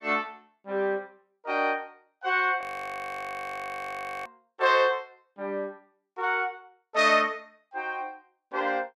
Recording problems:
frozen audio; at 2.5 s for 1.5 s

